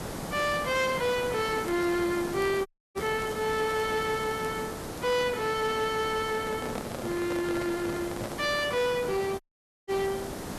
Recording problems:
distorted audio; hard clipping, uneven, signal-to-distortion ratio 10 dB
background hiss; slope -6 dB per octave, SNR 8 dB
crackling; from 1.5 to 5 s and at 10 s; loose cable, SNR 24 dB
dropout; at 2.5 s and at 9.5 s
handling noise; from 6.5 to 8.5 s; peak -3 dB vs average level

